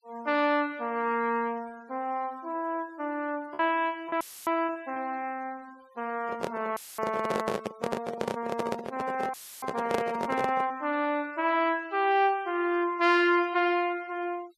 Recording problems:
denoising artefacts; signal-to-artefact ratio 24 dB
lost packets; 1.6% of the sound replaced, filled with repeated pitch periods
dropout; at 4 s, at 7 s and at 9.5 s; filled with static
microphone handling noise; from 6 to 11 s; peak +3 dB vs average level

